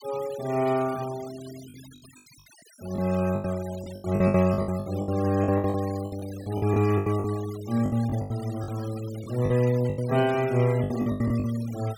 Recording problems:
denoising artefacts; signal-to-artefact ratio 19 dB
lost packets; 14% of the sound replaced, filled with the last packet

